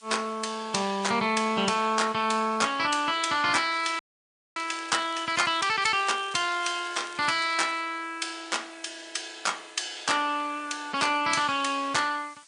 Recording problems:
codec artefacts; MP3, log-spectral distance 7 dB, nothing above 9.2 kHz
background hiss; slope +4 dB per octave, SNR 27 dB
crackling; from 3.5 to 5.5 s and from 6 to 8 s; loose cable, SNR 21 dB
frozen audio; at 4 s for 0.5 s

